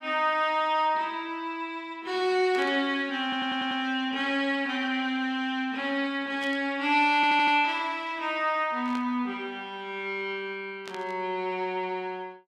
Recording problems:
static burst; 4 times, first at 2.5 s; peak -9 dB vs average level
stutter; at 3 s and at 7 s

